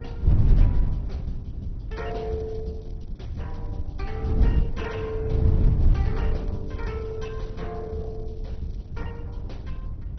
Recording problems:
lossy codec; Opus, then MP2, log-spectral distance 2 dB, nothing above 6 kHz
wind noise; below 98 Hz, SNR -8 dB
crackle; from 2 to 4.5 s and from 6 to 9 s; loose cable, SNR 29 dB

